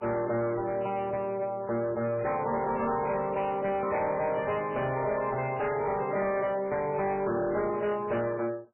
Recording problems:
lossy codec; MP3, log-spectral distance 4 dB, nothing above 2.5 kHz
distorted audio; hard clipping, signal-to-distortion ratio 10 dB

